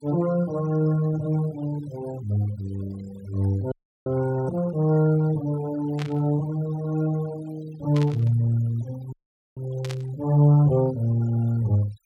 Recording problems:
denoising artefacts; signal-to-artefact ratio 20 dB
frozen audio; at 3.5 s and at 9 s
burst of static; at 6 s, at 8 s and at 10 s; peak -8 dB vs average level

